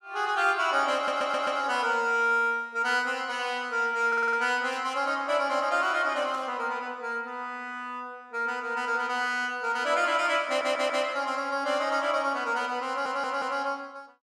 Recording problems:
stutter; 4 times, first at 1 s
static burst; at 4.5 s and at 6.5 s; peak -15 dB vs average level

